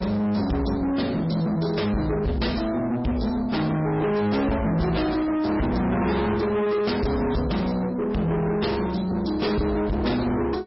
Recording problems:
lossy compression; MP3, log-spectral distance 4 dB, nothing above 5.5 kHz
distortion; soft clipping, signal-to-distortion ratio 6 dB

